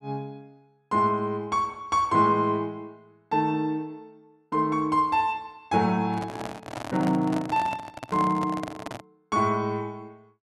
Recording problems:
handling noise; from 6 to 9 s; peak -4 dB vs average level

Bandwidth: 12 kHz